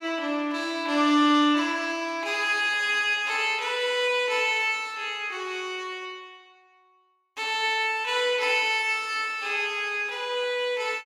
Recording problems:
none

